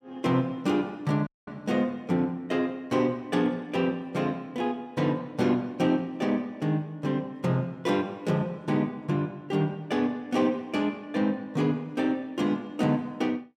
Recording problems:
dropout; at 1.5 s

